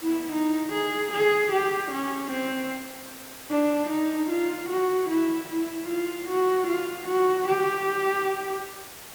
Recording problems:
background hiss; slope -2 dB per octave, SNR 14 dB

